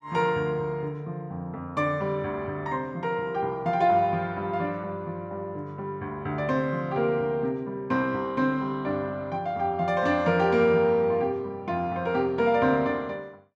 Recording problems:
none

